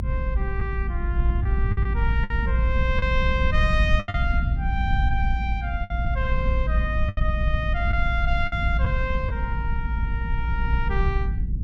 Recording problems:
low-frequency rumble; below 74 Hz, SNR -4 dB
lost packets; 5% of the sound replaced, filled with the last packet

